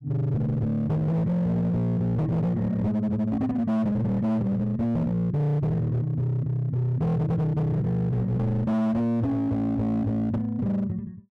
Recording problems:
distorted audio; hard clipping, signal-to-distortion ratio 8 dB

